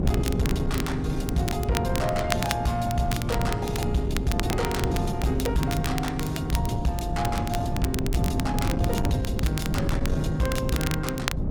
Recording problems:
distortion; soft clipping, signal-to-distortion ratio 11 dB
wind noise; below 230 Hz, SNR 1 dB
crackling; vinyl, SNR 8 dB

